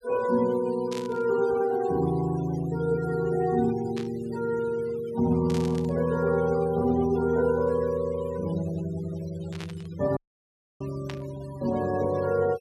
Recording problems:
denoising artefacts; signal-to-artefact ratio 18 dB
burst of static; 5 times, first at 1 s; peak -8 dB vs average level
audio cutting out; at 10 s for 0.5 s

